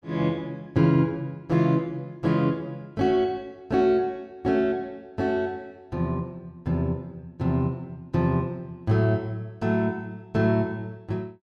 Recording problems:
none

